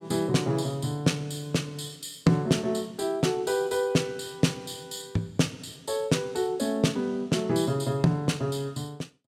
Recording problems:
none

